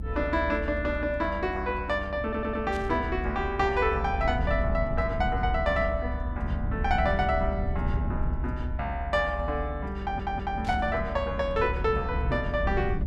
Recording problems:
low-frequency rumble; below 98 Hz, SNR 4 dB
audio stuttering; at 2 s and at 10 s
burst of static; at 2.5 s and at 11 s; peak -12 dB vs average level

